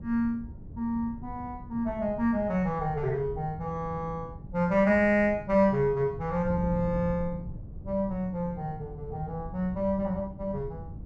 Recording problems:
wind on the microphone; below 160 Hz, SNR 13 dB

